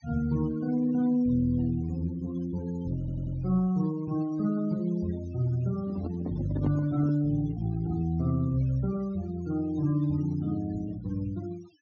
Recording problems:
treble missing; nothing above 6.8 kHz
noise reduction artefacts; signal-to-artefact ratio 20 dB
stutter; at 3 s
microphone handling noise; from 6 to 7 s; peak 0 dB vs average level

